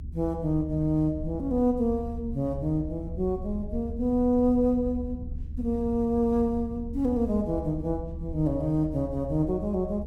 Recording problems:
low-frequency rumble; below 74 Hz, SNR 11 dB

